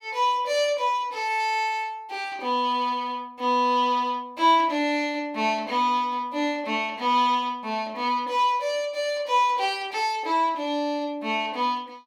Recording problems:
none

